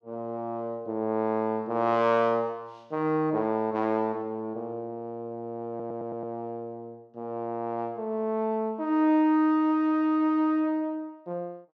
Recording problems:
stutter; at 5.5 s

